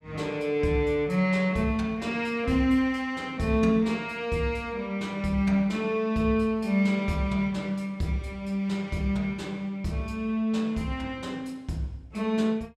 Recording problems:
none

